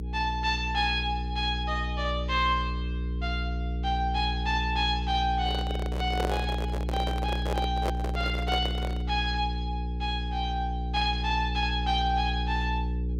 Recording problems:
mains hum; 60 Hz, harmonics up to 480 Hz, SNR 2 dB
microphone handling noise; from 5.5 to 9 s; peak +3 dB vs average level

